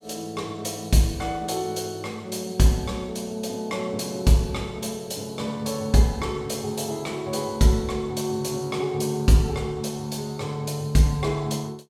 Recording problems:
none

